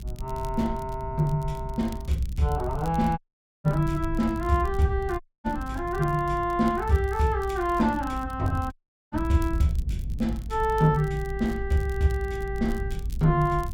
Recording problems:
low-frequency rumble; below 76 Hz, SNR 9 dB
crackle; vinyl, SNR 26 dB
audio cutting out; at 3 s, at 5 s and at 8.5 s

